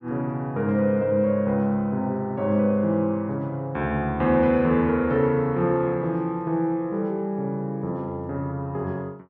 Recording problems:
none

